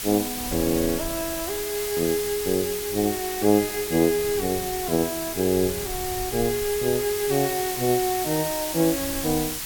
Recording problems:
background hiss; slope +2 dB per octave, SNR 5 dB
wind on the microphone; below 140 Hz, SNR 18 dB

